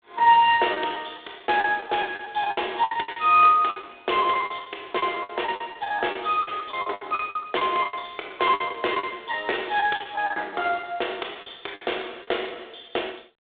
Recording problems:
telephone audio; 300 Hz to 3.6 kHz, G.726
packet loss; 15% of the sound replaced, filled with the last packet

